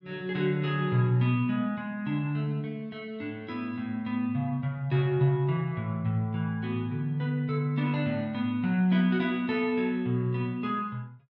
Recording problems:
none

